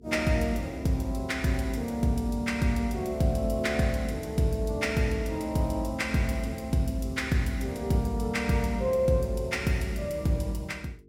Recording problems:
hum; 50 Hz, harmonics up to 450 Hz, SNR 27 dB

